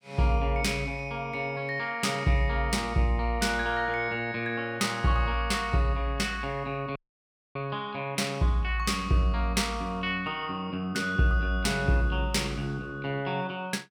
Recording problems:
audio cutting out; at 7 s for 0.5 s

